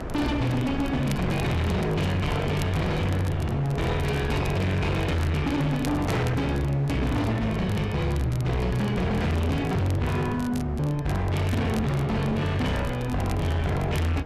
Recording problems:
distortion; hard clipping, signal-to-distortion ratio 7 dB
wind noise; below 520 Hz, SNR 11 dB
crackle; vinyl, SNR 21 dB

